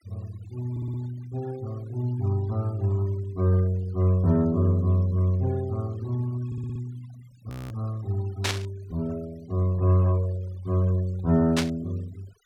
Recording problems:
denoising artefacts; signal-to-artefact ratio 25 dB
stutter; at 0.5 s and at 6.5 s
audio freezing; at 7.5 s
static burst; at 8.5 s and at 12 s; peak +3 dB vs average level

